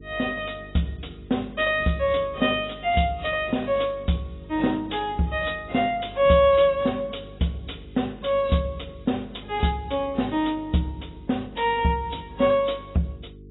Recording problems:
lossy compression; AAC, log-spectral distance 5 dB, nothing above 3.8 kHz
electrical hum; 50 Hz, harmonics up to 450 Hz, SNR 20 dB

